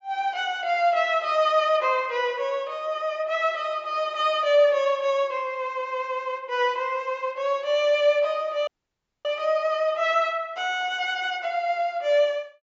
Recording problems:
low-pass filter; nothing above 8 kHz
dropout; at 8.5 s for 0.5 s

